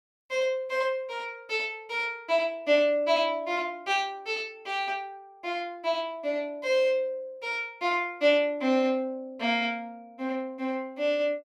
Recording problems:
none

